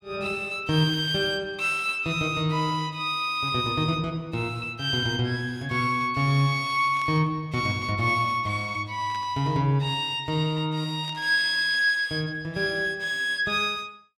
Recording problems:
static burst; at 7 s, at 9 s and at 11 s; peak -14 dB vs average level

